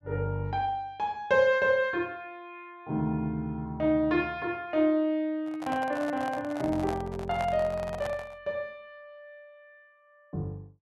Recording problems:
handling noise; from 5.5 to 8.5 s; peak -3 dB vs average level

